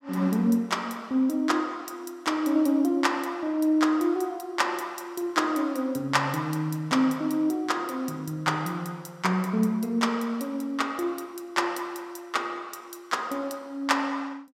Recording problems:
none

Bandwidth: 16 kHz